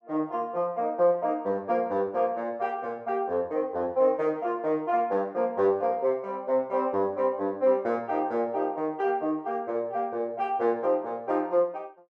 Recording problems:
none

